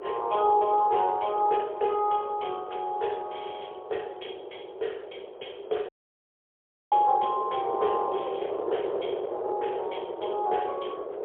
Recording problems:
phone line; 320 Hz to 3.4 kHz, AMR-NB, then MP3
wind noise; below 580 Hz, SNR 8 dB
audio cutting out; at 6 s for 1 s

